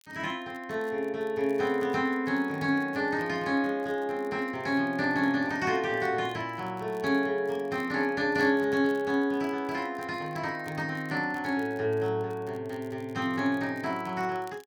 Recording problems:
crackling; vinyl, SNR 30 dB

